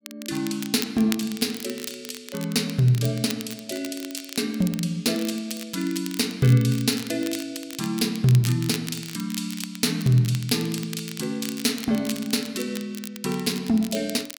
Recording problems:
crackle; vinyl, SNR 13 dB

